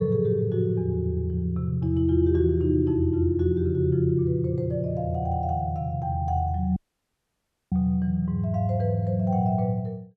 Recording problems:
audio cutting out; at 7 s for 1 s

